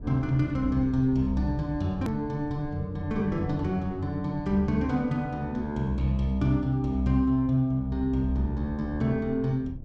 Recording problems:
rumble; below 130 Hz, SNR 17 dB
hard cut with a click; at 2 s

